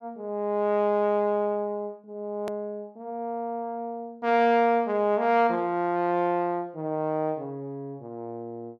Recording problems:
click at an edit; at 2.5 s

